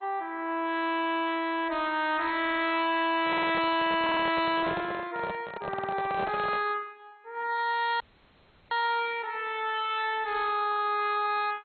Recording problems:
codec artefacts; MP2, log-spectral distance 5 dB, nothing above 3.8 kHz
distortion; hard clipping, signal-to-distortion ratio 7 dB
audio stuttering; 4 times, first at 2.5 s
handling noise; from 3 to 6.5 s; peak -3 dB vs average level
audio freezing; at 8 s for 0.5 s

